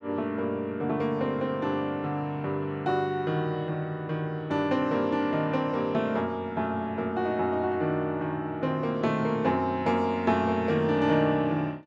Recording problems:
none

